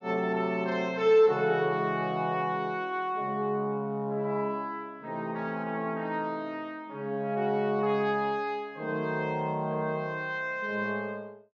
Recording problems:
low-pass filter; nothing above 7 kHz

